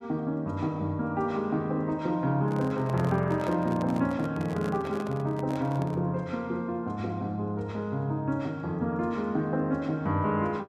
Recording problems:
handling noise; from 2.5 to 6 s; peak -5 dB vs average level

